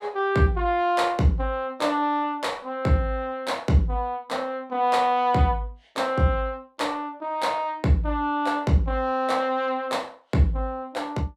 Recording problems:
none

